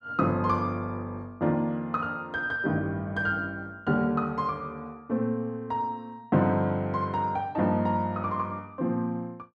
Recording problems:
none

